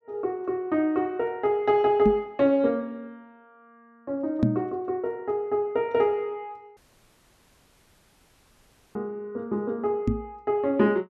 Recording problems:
knock on the microphone; at 2 s, at 4.5 s and at 10 s; peak +7 dB vs average level
audio cutting out; at 7 s for 2 s

